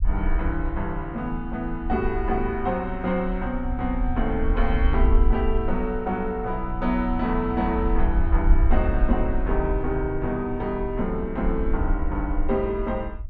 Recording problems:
rumble; below 56 Hz, SNR 2 dB

